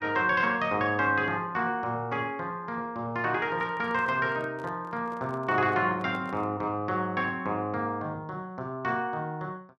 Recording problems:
handling noise; from 3.5 to 6.5 s; peak -12 dB vs average level

